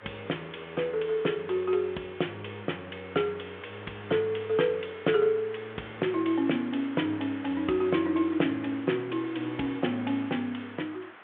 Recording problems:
telephone audio; 220 Hz to 3.6 kHz, G.726
hiss; SNR 18 dB

